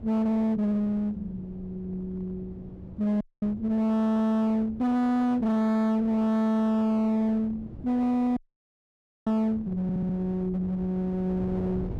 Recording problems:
distortion; hard clipping, uneven, signal-to-distortion ratio 6 dB
wind on the microphone; below 310 Hz, SNR 17 dB
audio cutting out; at 3 s and at 8.5 s for 1 s
stutter; at 10 s

